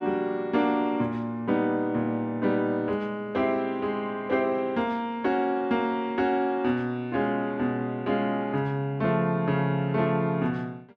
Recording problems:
none

